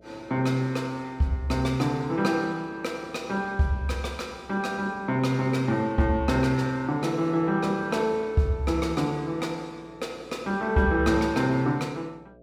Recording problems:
hum; 60 Hz, harmonics up to 660 Hz, SNR 27 dB

